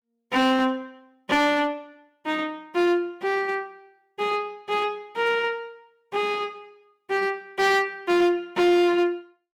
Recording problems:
distortion; hard clipping, uneven, signal-to-distortion ratio 11 dB

